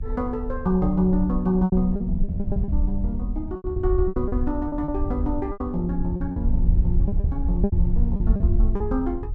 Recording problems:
wind noise; below 72 Hz, SNR 1 dB
lost packets; 11% of the sound replaced, filled with repeated pitch periods

